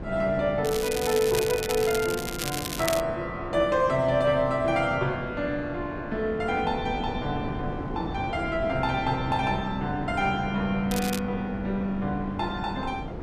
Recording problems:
wind on the microphone; below 420 Hz, SNR 10 dB
crackling; from 0.5 to 3 s and at 11 s; loose cable, SNR 7 dB

